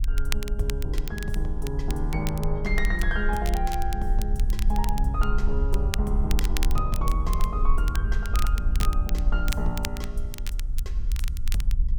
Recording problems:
low-frequency rumble; below 50 Hz, SNR -3 dB
crackle; vinyl, SNR 8 dB

